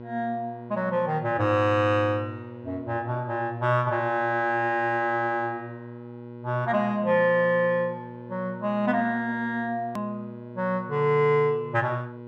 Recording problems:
electrical hum; 60 Hz, harmonics up to 1.6 kHz, SNR 15 dB
edit click; at 10 s

